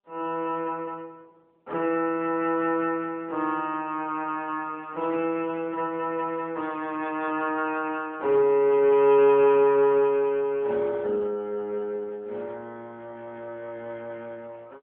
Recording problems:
phone line; 240 Hz to 3.4 kHz, AMR-NB

